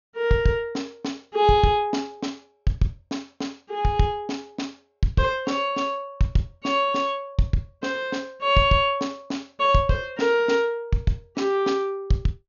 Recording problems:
treble cut off; nothing above 6.8 kHz

